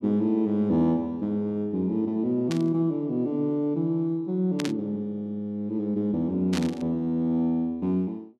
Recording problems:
static burst; at 2.5 s, at 4.5 s and at 6.5 s; peak -3 dB vs average level

